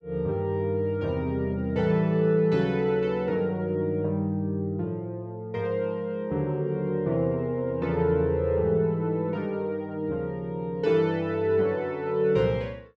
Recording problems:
none

